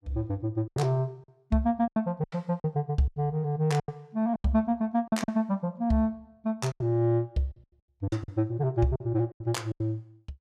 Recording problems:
lost packets; 11% of the sound replaced, filled with silence

